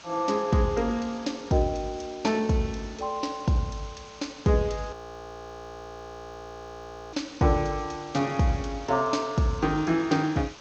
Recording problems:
codec artefacts; MP2, then G.722, log-spectral distance 9 dB
hiss; slope -1 dB per octave, SNR 19 dB
audio freezing; at 5 s for 2 s

